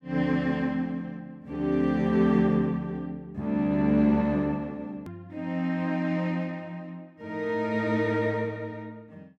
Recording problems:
click at an edit; at 5 s

